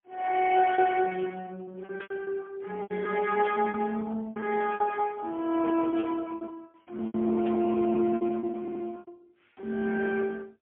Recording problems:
phone line; 260 Hz to 3.3 kHz, AMR-NB, then MP3
packet loss; 16% of the sound replaced, filled with repeated pitch periods
static burst; 4 times, first at 2 s; peak -9 dB vs average level
audio stuttering; at 8.5 s

